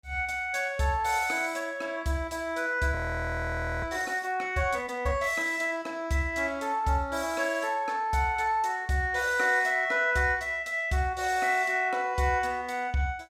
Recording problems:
frozen audio; at 3 s for 1 s

